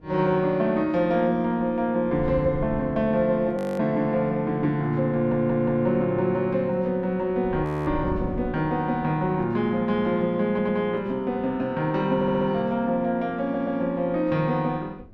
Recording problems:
wind noise; below 220 Hz, SNR 17 dB
audio freezing; at 3.5 s and at 7.5 s
audio stuttering; 4 times, first at 5 s

